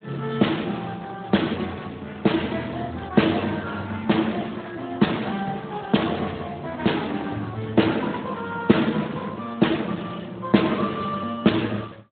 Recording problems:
low-pass filter; nothing above 3.9 kHz
codec artefacts; Opus, then Speex, log-spectral distance 5 dB

